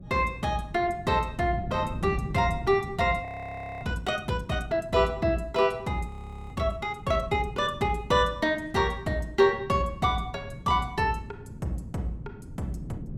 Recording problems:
wind on the microphone; below 200 Hz, SNR 14 dB
frozen audio; at 3.5 s for 0.5 s and at 6 s

